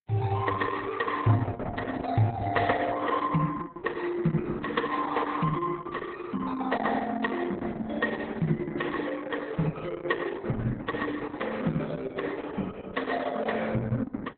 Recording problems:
lossy codec; Vorbis, then Opus, log-spectral distance 4 dB, nothing above 3.9 kHz

